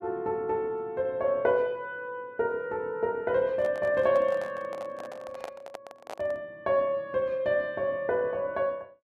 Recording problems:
microphone handling noise; from 3.5 to 6.5 s; peak -6 dB vs average level

